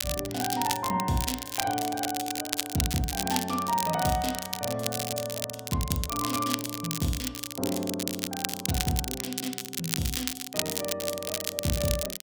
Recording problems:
crackling; vinyl, SNR 1 dB

